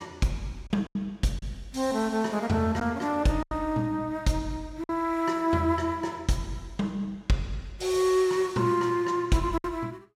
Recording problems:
packet loss; 3% of the sound replaced, filled with silence

